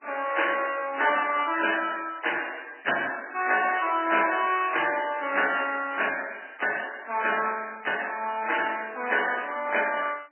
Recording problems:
codec artefacts; MP2, then MP3, log-spectral distance 9 dB, nothing above 3 kHz

